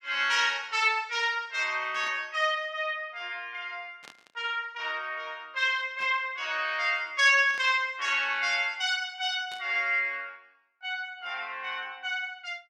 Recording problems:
static burst; 5 times, first at 2 s; peak -14 dB vs average level

